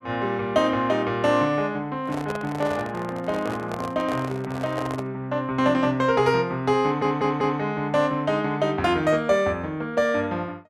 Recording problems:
microphone handling noise; from 2 to 5 s; peak -4 dB vs average level
stutter; at 7 s

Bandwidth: 13.5 kHz